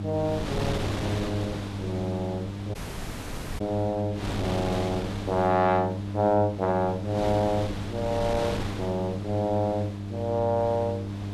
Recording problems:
mains hum; 50 Hz, harmonics up to 700 Hz, SNR 6 dB
wind on the microphone; below 1.2 kHz, SNR 8 dB
dropout; at 3 s for 1 s

